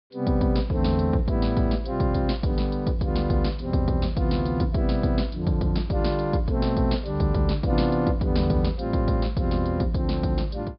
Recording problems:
treble cut off; nothing above 5.1 kHz

